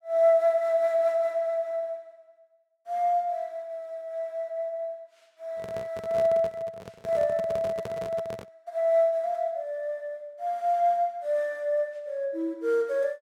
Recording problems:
microphone handling noise; from 5.5 to 8.5 s; peak -6 dB vs average level

